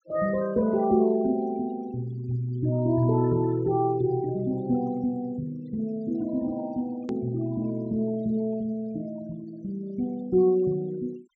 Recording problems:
treble missing; nothing above 8 kHz
noise reduction artefacts; signal-to-artefact ratio 24 dB
hard cut with a click; at 7 s

